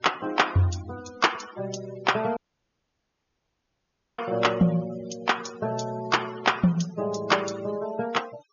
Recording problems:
treble cut off; nothing above 6.8 kHz
noise reduction artefacts; signal-to-artefact ratio 17 dB
dropout; at 2.5 s for 2 s

